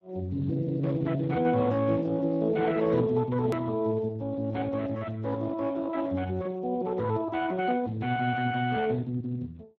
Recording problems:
lossy compression; Speex, log-spectral distance 3 dB, nothing above 13.1 kHz
edit click; at 3.5 s

